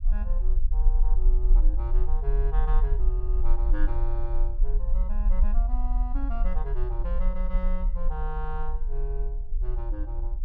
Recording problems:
rumble; below 40 Hz, strongest tone 22 Hz, SNR -11 dB

